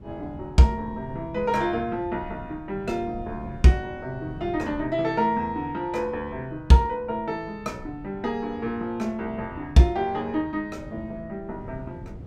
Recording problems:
wind on the microphone; below 210 Hz, SNR 17 dB

